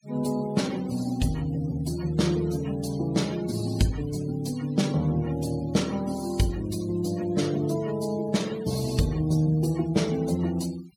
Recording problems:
noise reduction artefacts; signal-to-artefact ratio 18 dB

